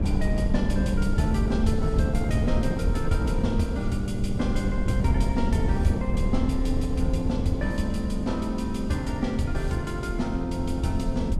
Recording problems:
wind noise; below 120 Hz, SNR 1 dB

